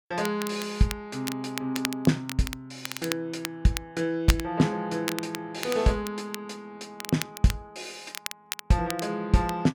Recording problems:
crackling; vinyl, SNR 9 dB

